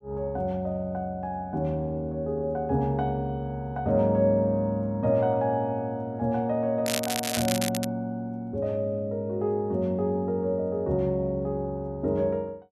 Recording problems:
crackle; from 7 to 8 s; loose cable, SNR 3 dB

